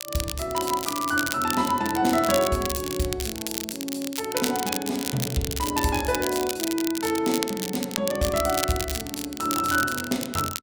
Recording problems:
crackling; vinyl, SNR 5 dB

